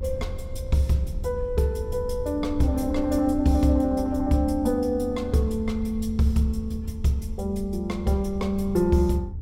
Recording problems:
hum; 50 Hz, harmonics up to 1.4 kHz, SNR 28 dB
low-frequency rumble; below 80 Hz, SNR 11 dB

